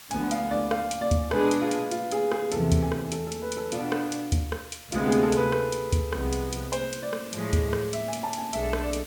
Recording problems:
hiss; slope +1 dB per octave, SNR 17 dB

